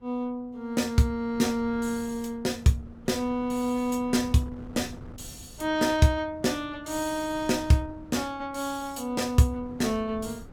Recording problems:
wind on the microphone; below 260 Hz, SNR 20 dB

